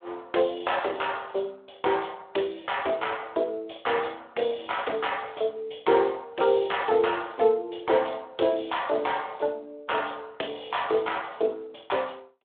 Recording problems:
telephone audio; 320 Hz to 3.6 kHz, Speex

